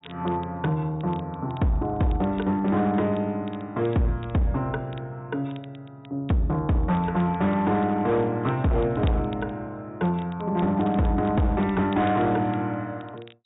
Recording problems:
treble cut off; nothing above 4 kHz
distorted audio; hard clipping, signal-to-distortion ratio 10 dB
crackle; vinyl, SNR 27 dB

